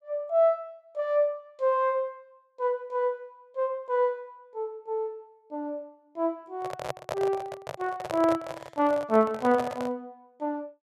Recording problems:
microphone handling noise; from 6.5 to 10 s; peak +1 dB vs average level

